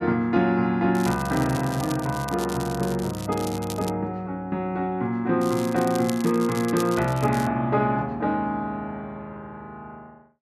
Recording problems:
crackling; from 1 to 4 s and from 5.5 to 7.5 s; loose cable, SNR 15 dB

